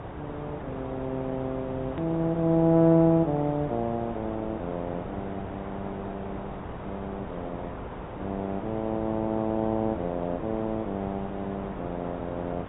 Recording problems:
low-pass filter; nothing above 3.8 kHz
lossy compression; AAC, log-spectral distance 3 dB
hum; 60 Hz, harmonics up to 480 Hz, SNR 21 dB
hiss; SNR 10 dB
hard cut with a click; at 2 s

